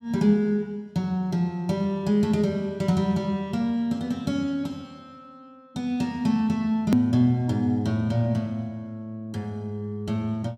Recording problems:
edit click; at 7 s

